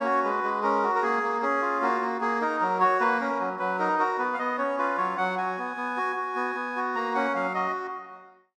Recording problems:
none

